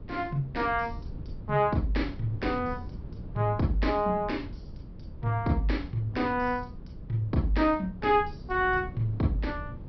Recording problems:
low-pass filter; nothing above 5.5 kHz
wind noise; below 160 Hz, SNR 13 dB

